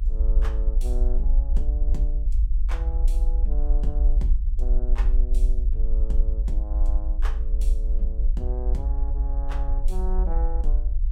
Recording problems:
low-frequency rumble; below 50 Hz, strongest tone 28 Hz, SNR -13 dB

